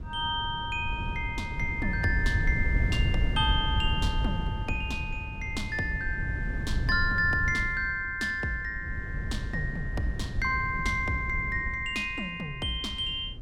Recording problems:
wind noise; below 110 Hz, SNR 4 dB

